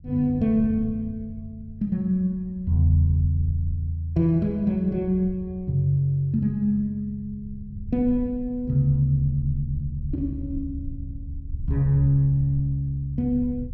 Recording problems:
rumble; below 90 Hz, SNR 15 dB

